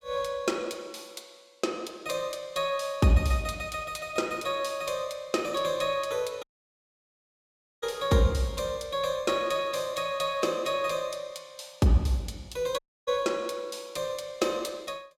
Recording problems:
dropout; at 6.5 s for 1.5 s and at 13 s

